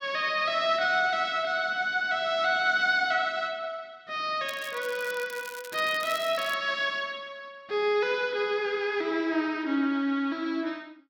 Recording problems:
crackling; from 4.5 to 6.5 s; loose cable, SNR 17 dB

